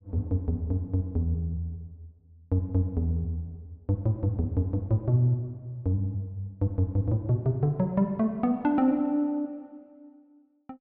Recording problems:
treble cut off; nothing above 5.5 kHz

